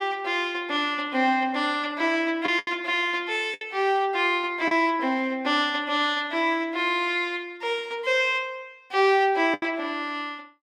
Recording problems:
packet loss; 3% of the sound replaced, filled with the last packet

